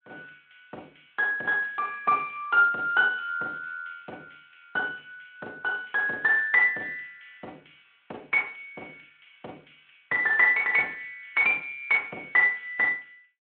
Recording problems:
phone line; 280 Hz to 3.3 kHz, Speex

